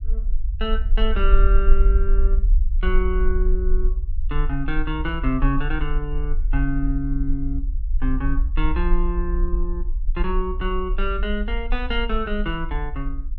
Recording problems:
low-frequency rumble; below 44 Hz, strongest tone 22 Hz, SNR -3 dB

